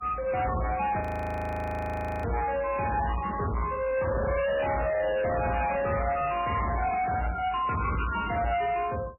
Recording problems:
codec artefacts; MP3, log-spectral distance 5 dB, nothing above 20.1 kHz
distortion; soft clipping, signal-to-distortion ratio 7 dB
frozen audio; at 1 s for 1 s

